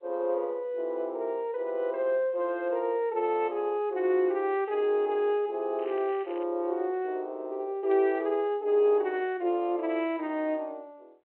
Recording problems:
phone line; 300 Hz to 3.3 kHz, G.726
crackle; at 6 s; loose cable, SNR 25 dB

